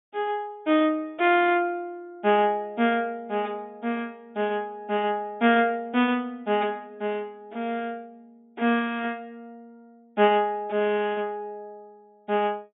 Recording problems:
treble missing; nothing above 4 kHz

